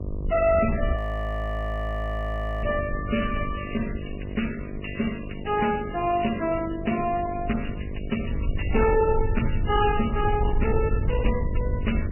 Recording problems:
lossy compression; MP3, then Vorbis, log-spectral distance 6 dB, nothing above 2.9 kHz
distortion; soft clipping, signal-to-distortion ratio 12 dB
hum; 50 Hz, harmonics up to 1.1 kHz, SNR 11 dB
wind noise; below 94 Hz, SNR 4 dB
audio freezing; at 1 s for 1.5 s

